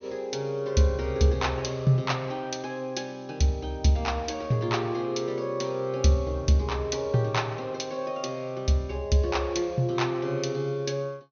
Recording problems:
treble missing; nothing above 6.4 kHz

